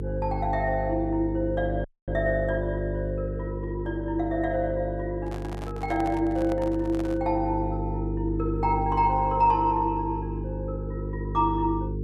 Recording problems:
hum; 50 Hz, harmonics up to 450 Hz, SNR 5 dB
dropout; at 2 s
handling noise; from 5 to 7 s; peak -7 dB vs average level

